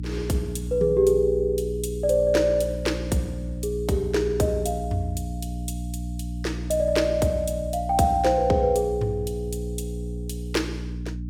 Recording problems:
hum; 60 Hz, harmonics up to 300 Hz, SNR 8 dB

